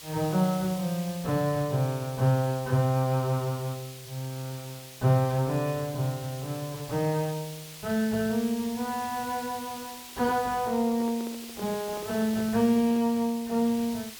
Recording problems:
background hiss; slope +2 dB per octave, SNR 14 dB
microphone handling noise; from 10 to 13 s; peak -11 dB vs average level

